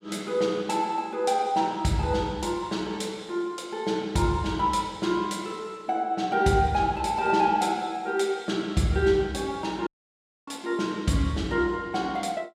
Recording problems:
audio cutting out; at 10 s for 0.5 s

